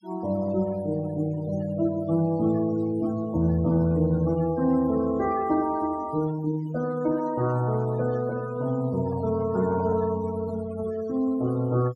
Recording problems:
noise reduction artefacts; signal-to-artefact ratio 19 dB
handling noise; from 8.5 to 10 s; peak -11 dB vs average level

